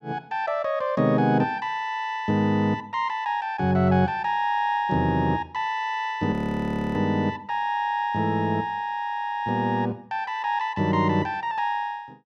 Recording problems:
frozen audio; at 6.5 s for 0.5 s

